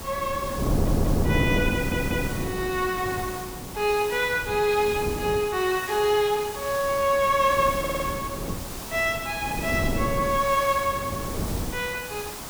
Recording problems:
background hiss; SNR 11 dB
wind on the microphone; below 330 Hz, SNR 6 dB
audio stuttering; at 0.5 s, at 1.5 s and at 8 s

